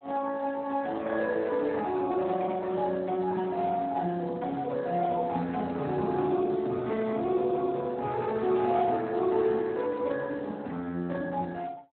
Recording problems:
phone line; 130 Hz to 2.2 kHz, Speex

